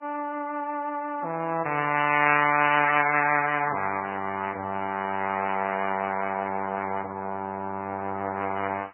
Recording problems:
lossy codec; MP3, then Vorbis, log-spectral distance 3 dB, nothing above 2.5 kHz

